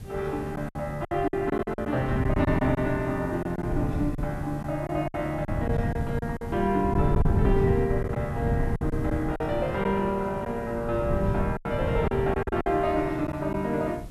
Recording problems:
hiss; slope -4 dB per octave, SNR 26 dB
wind noise; below 160 Hz, SNR 4 dB
packet loss; 9% of the sound replaced, filled with silence

